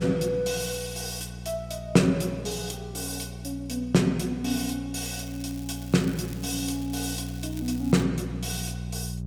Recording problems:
electrical hum; 60 Hz, harmonics up to 420 Hz, SNR 9 dB
crackling; from 5 to 8 s; loose cable, SNR 18 dB

